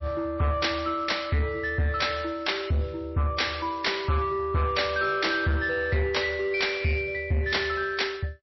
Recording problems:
lossy compression; MP3, log-spectral distance 4 dB, nothing above 5.7 kHz
distorted audio; soft clipping, signal-to-distortion ratio 8 dB

